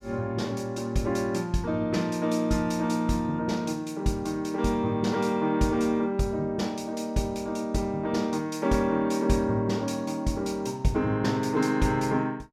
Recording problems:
none

